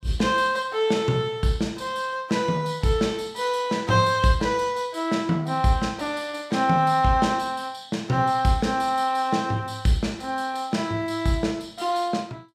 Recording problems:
none

